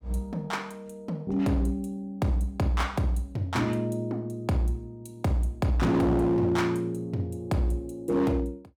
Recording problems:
distortion; hard clipping, signal-to-distortion ratio 11 dB

